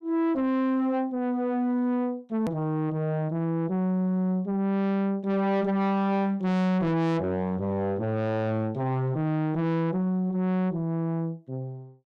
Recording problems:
distortion; soft clipping, signal-to-distortion ratio 7 dB
click at an edit; at 2.5 s

